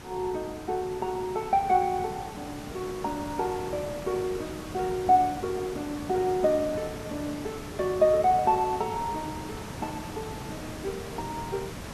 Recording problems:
background hiss; slope -5 dB per octave, SNR 11 dB

